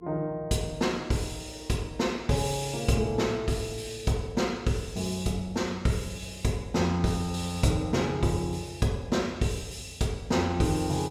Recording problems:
hum; 50 Hz, harmonics up to 450 Hz, SNR 27 dB

